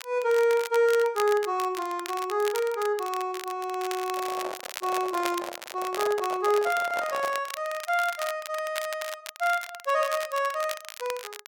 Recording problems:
crackle; vinyl, SNR 12 dB
microphone handling noise; from 4 to 7.5 s; peak -4 dB vs average level

